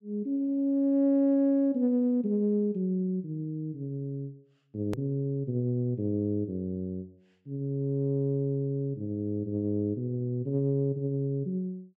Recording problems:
click at an edit; at 5 s

